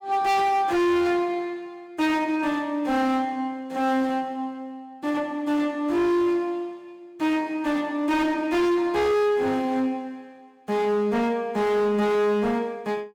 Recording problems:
distorted audio; hard clipping, signal-to-distortion ratio 7 dB

